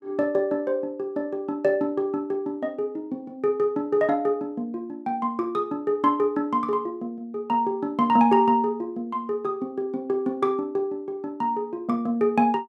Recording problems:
none

